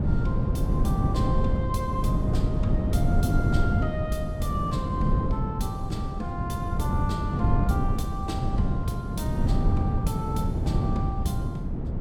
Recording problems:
wind noise; below 180 Hz, SNR -7 dB

